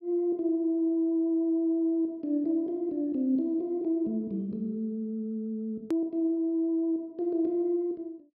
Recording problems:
treble cut off; nothing above 5.5 kHz
hard cut with a click; at 6 s

